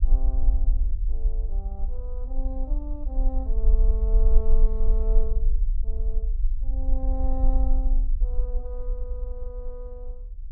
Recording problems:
low-frequency rumble; below 42 Hz, strongest tone 20 Hz, SNR -13 dB

